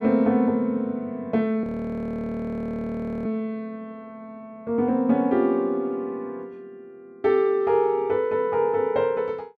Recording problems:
audio freezing; at 1.5 s for 1.5 s

